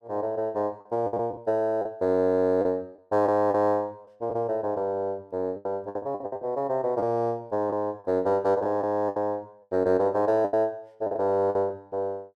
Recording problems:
lost packets; 9% of the sound replaced, filled with the last packet

